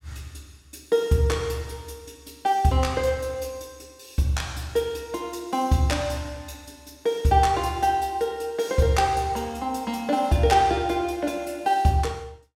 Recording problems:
none

